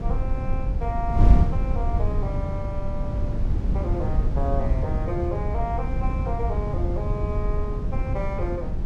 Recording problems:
wind on the microphone; below 100 Hz, SNR -6 dB

